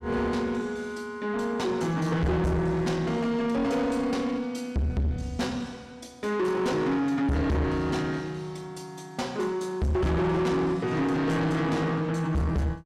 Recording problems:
distorted audio; soft clipping, signal-to-distortion ratio 6 dB

